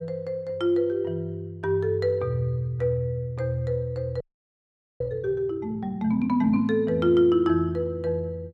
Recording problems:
frozen audio; at 4 s for 1 s

